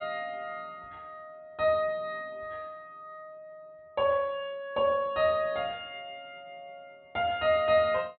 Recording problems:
low-pass filter; nothing above 4 kHz

